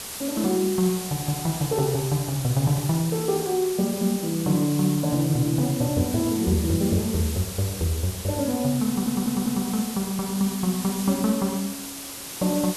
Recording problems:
hiss; slope -1 dB per octave, SNR 9 dB
audio stuttering; at 9 s

